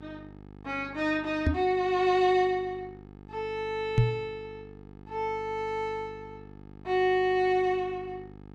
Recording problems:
mains hum; 50 Hz, harmonics up to 1.8 kHz, SNR 19 dB
microphone bump; at 1.5 s and at 4 s; peak +9 dB vs average level

